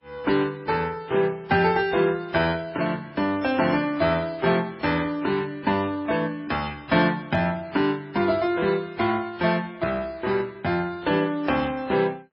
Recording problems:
lossy codec; MP3, then AAC, log-spectral distance 3 dB, nothing above 5 kHz

